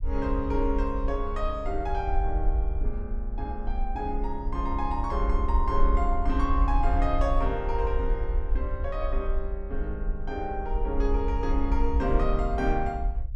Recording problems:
rumble; below 54 Hz, SNR 0 dB

